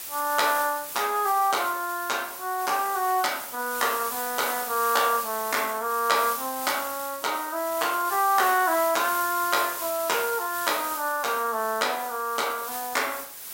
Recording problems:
background hiss; slope +1 dB per octave, SNR 8 dB

